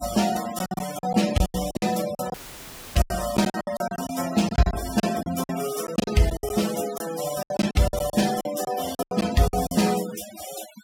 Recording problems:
noise reduction artefacts; signal-to-artefact ratio 11 dB
packet loss; 16% of the sound replaced, filled with silence
dropout; at 2.5 s for 0.5 s; filled with static

